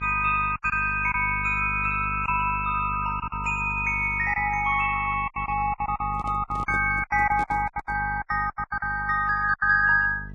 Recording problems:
lossy codec; Vorbis, log-spectral distance 2 dB
electrical hum; 50 Hz, harmonics up to 450 Hz, SNR 14 dB
packet loss; 12% of the sound replaced, filled with silence
handling noise; from 6 to 8 s; peak -9 dB vs average level

